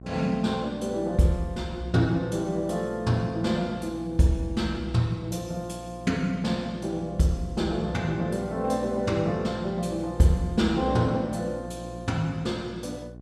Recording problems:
hum; 60 Hz, harmonics up to 780 Hz, SNR 15 dB

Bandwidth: 14.5 kHz